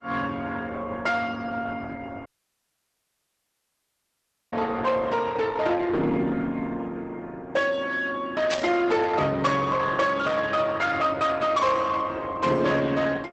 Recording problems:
lossy compression; Opus, log-spectral distance 3 dB, nothing above 8 kHz
distortion; soft clipping, signal-to-distortion ratio 10 dB
audio cutting out; at 2.5 s for 2.5 s
burst of static; at 8.5 s; peak 0 dB vs average level

